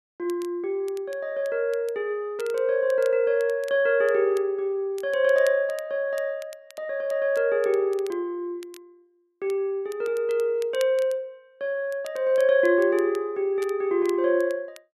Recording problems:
crackling; vinyl, SNR 25 dB

